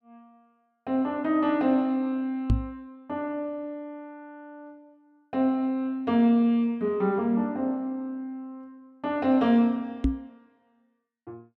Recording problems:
microphone thump; at 2.5 s and at 10 s; peak +7 dB vs average level

